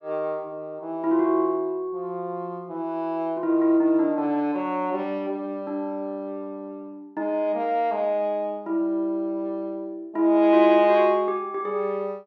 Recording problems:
none

